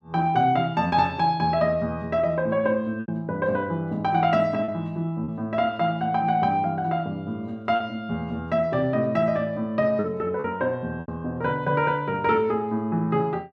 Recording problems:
packet loss; 3% of the sound replaced, filled with repeated pitch periods

